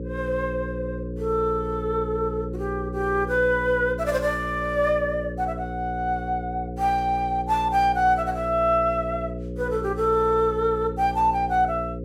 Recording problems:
hum; 60 Hz, harmonics up to 540 Hz, SNR 9 dB

